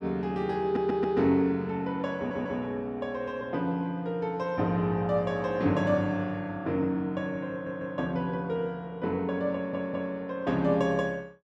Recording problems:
audio stuttering; 4 times, first at 0.5 s

